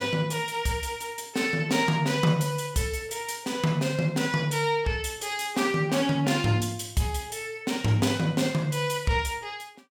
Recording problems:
none

